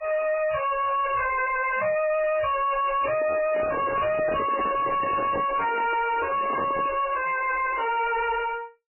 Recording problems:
codec artefacts; MP3, log-spectral distance 6 dB, nothing above 2.6 kHz
distortion; soft clipping, signal-to-distortion ratio 5 dB
microphone handling noise; from 3 to 7 s; peak +1 dB vs average level

